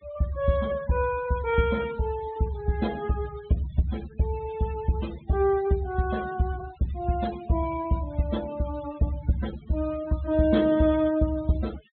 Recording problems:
treble cut off; nothing above 4 kHz
denoising artefacts; signal-to-artefact ratio 19 dB

